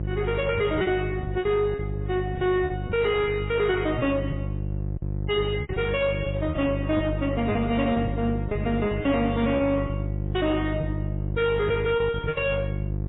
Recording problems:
lossy codec; MP3, then AAC, log-spectral distance 2 dB, nothing above 3.3 kHz
distortion; soft clipping, signal-to-distortion ratio 11 dB
hum; 50 Hz, harmonics up to 550 Hz, SNR 5 dB
lost packets; 9% of the sound replaced, filled with repeated pitch periods

